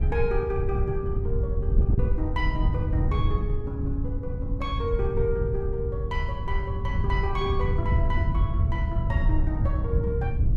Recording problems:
wind on the microphone; below 100 Hz, SNR -5 dB

